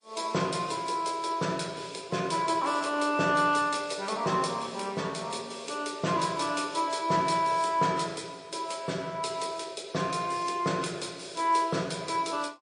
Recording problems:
codec artefacts; MP3, log-spectral distance 4 dB

